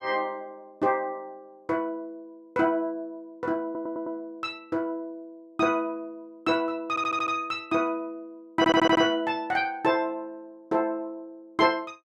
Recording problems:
stutter; at 3.5 s, at 7 s and at 8.5 s

